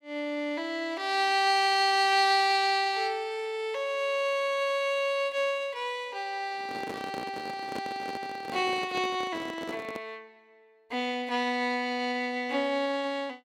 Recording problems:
microphone handling noise; from 6.5 to 10 s; peak -5 dB vs average level

